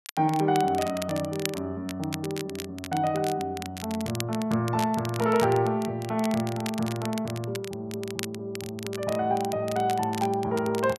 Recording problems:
crackle; vinyl, SNR 12 dB

